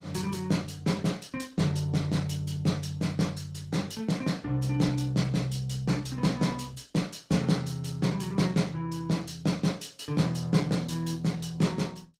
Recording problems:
codec artefacts; Opus, log-spectral distance 4 dB, nothing above 18.9 kHz

